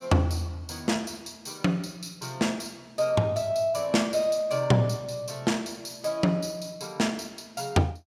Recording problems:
none

